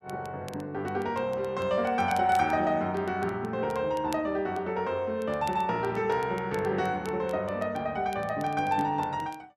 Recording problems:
crackling; vinyl, SNR 24 dB

